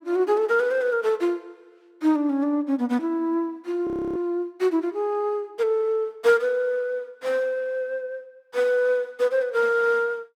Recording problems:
frozen audio; at 4 s

